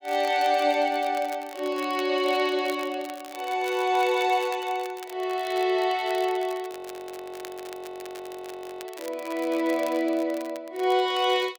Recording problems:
crackling; vinyl, SNR 20 dB
audio freezing; at 6.5 s for 2 s

